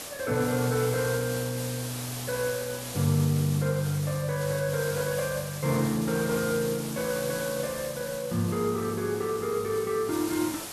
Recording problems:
hiss; slope -2 dB per octave, SNR 9 dB

